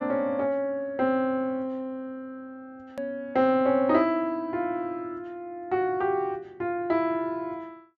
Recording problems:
low-pass filter; nothing above 8 kHz
hard cut with a click; at 3 s

